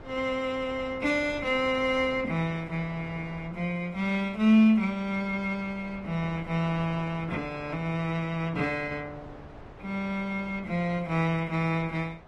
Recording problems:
lossy compression; AAC, log-spectral distance 2 dB
wind on the microphone; below 870 Hz, SNR 19 dB

